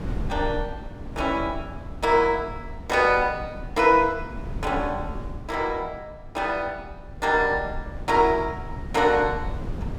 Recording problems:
wind on the microphone; below 160 Hz, SNR 13 dB

